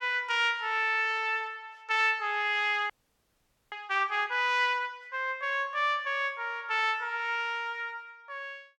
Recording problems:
frozen audio; at 3 s for 1 s

